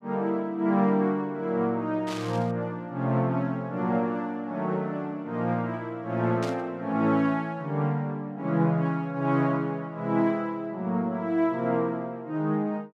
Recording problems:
static burst; at 2 s and at 6.5 s; peak -6 dB vs average level

